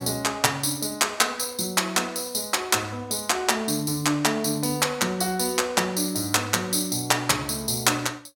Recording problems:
none

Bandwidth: 17 kHz